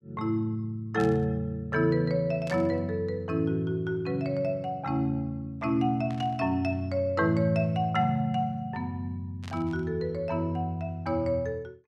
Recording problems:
static burst; 4 times, first at 1 s; peak -10 dB vs average level

